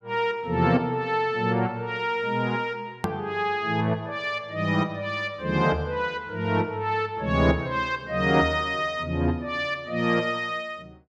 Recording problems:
hard cut with a click; at 3 s

